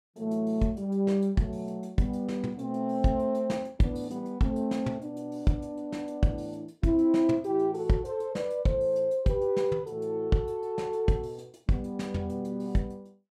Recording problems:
none

